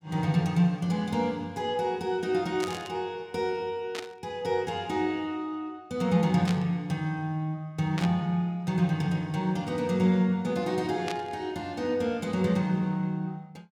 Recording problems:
static burst; 5 times, first at 2.5 s; peak -3 dB vs average level

